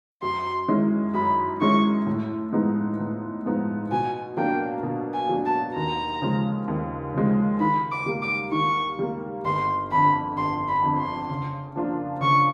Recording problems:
none

